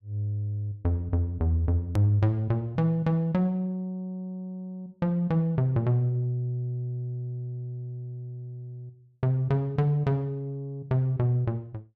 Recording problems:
click at an edit; at 2 s

